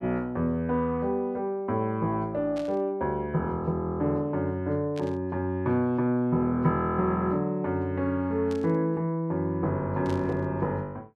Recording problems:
static burst; 4 times, first at 2.5 s; peak -12 dB vs average level

